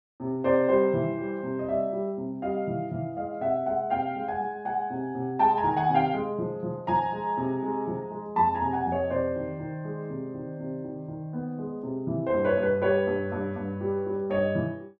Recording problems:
none

